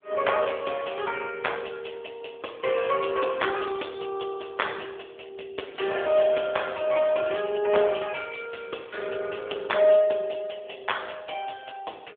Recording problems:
telephone audio; 260 Hz to 3.5 kHz, AMR-NB

